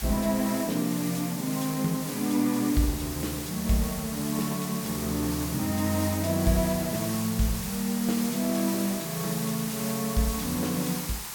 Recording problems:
background hiss; SNR 6 dB

